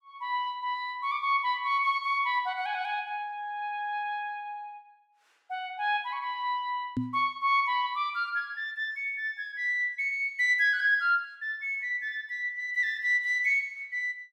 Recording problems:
knock on the microphone; at 7 s; peak +2 dB vs average level

